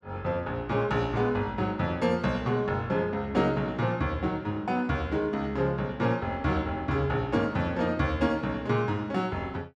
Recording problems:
none

